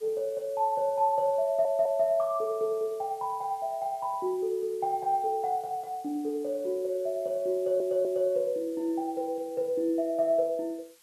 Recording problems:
background hiss; slope +2 dB per octave, SNR 27 dB
stutter; at 1.5 s and at 7.5 s

